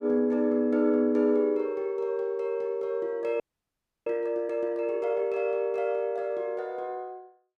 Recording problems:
audio freezing; at 3.5 s for 0.5 s

